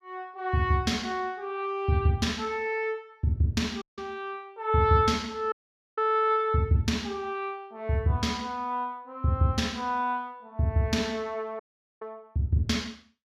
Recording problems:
audio cutting out; at 4 s, at 5.5 s and at 12 s

